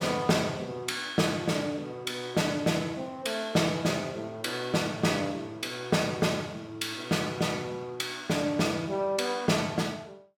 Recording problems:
none

